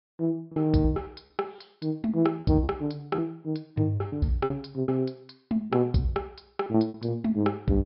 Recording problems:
treble missing; nothing above 5.3 kHz
packet loss; 10% of the sound replaced, filled with repeated pitch periods

